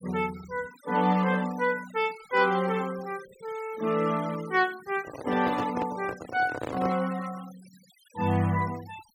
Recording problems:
denoising artefacts; signal-to-artefact ratio 19 dB
handling noise; from 5 to 7 s; peak -2 dB vs average level

